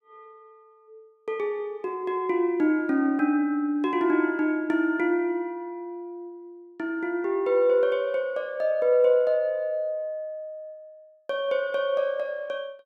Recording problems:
none

